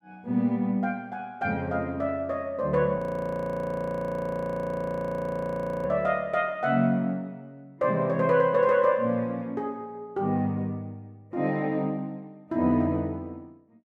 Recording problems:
frozen audio; at 3 s for 3 s

